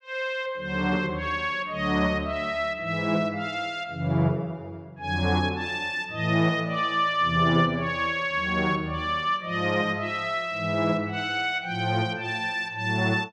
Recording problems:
none

